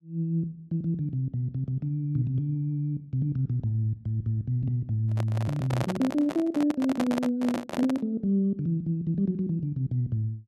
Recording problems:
microphone handling noise; from 5 to 8 s; peak +2 dB vs average level

